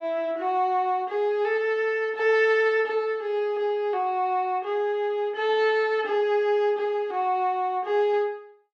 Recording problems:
none

